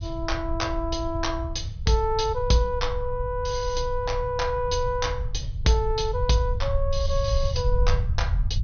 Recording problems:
low-pass filter; nothing above 6.3 kHz
rumble; below 84 Hz, SNR 4 dB

